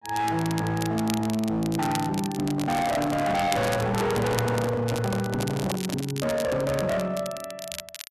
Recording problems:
distorted audio; hard clipping, signal-to-distortion ratio 7 dB
crackle; vinyl, SNR 11 dB
microphone handling noise; from 2.5 to 6 s; peak -1 dB vs average level

